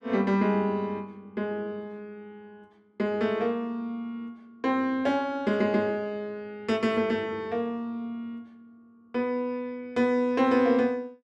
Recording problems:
none

